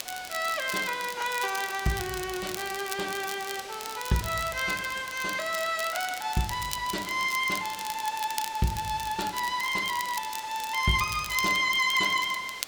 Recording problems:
hiss; slope -1 dB per octave, SNR 14 dB
crackling; vinyl, SNR 11 dB

